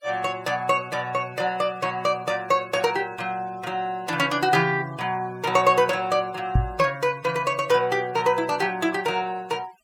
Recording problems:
noise reduction artefacts; signal-to-artefact ratio 24 dB
knock on the microphone; at 6.5 s; peak +6 dB vs average level

